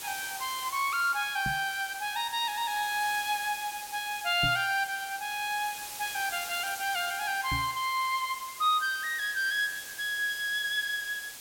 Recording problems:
background hiss; slope +1 dB per octave, SNR 10 dB
microphone thump; at 1.5 s, at 4.5 s and at 7.5 s; peak -1 dB vs average level

